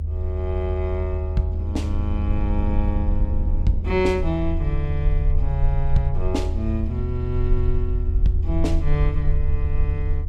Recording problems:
rumble; below 78 Hz, SNR -2 dB
wind noise; below 220 Hz, SNR 12 dB

